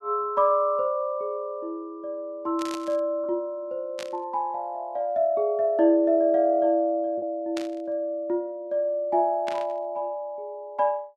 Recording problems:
lost packets; 0.5% of the sound replaced, filled with repeated pitch periods
static burst; 4 times, first at 2.5 s; peak -6 dB vs average level

